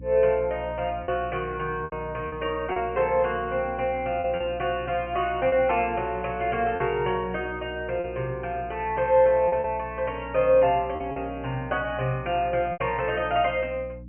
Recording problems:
treble missing; nothing above 3 kHz
hum; 60 Hz, harmonics up to 300 Hz, SNR 16 dB
lost packets; 5% of the sound replaced, filled with repeated pitch periods

